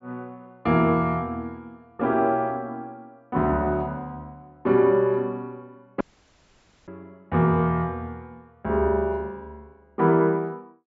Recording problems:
treble missing; nothing above 8 kHz
audio cutting out; at 6 s for 1 s

